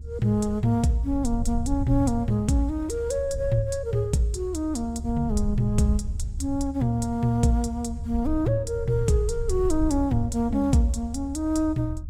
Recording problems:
rumble; below 74 Hz, SNR 8 dB

